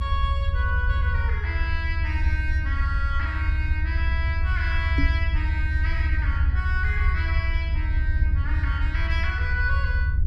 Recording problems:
rumble; below 80 Hz, SNR -6 dB
microphone thump; at 5 s; peak +7 dB vs average level

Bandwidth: 13.5 kHz